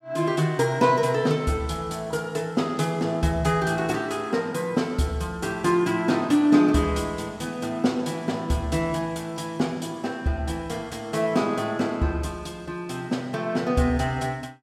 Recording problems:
none

